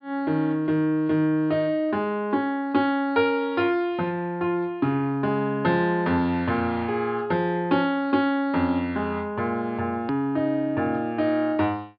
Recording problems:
treble cut off; nothing above 5.1 kHz
edit click; at 10 s

